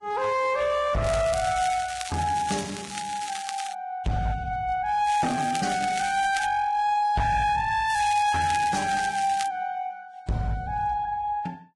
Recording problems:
codec artefacts; Vorbis, log-spectral distance 4 dB, nothing above 10.4 kHz
distortion; hard clipping, signal-to-distortion ratio 11 dB
crackle; from 1 to 3.5 s, from 5 to 6.5 s and from 8 to 9.5 s; loose cable, SNR 11 dB

